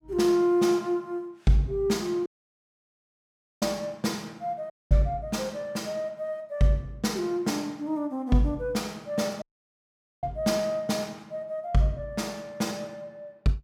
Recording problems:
audio cutting out; at 2.5 s for 1.5 s, at 4.5 s and at 9.5 s for 1 s

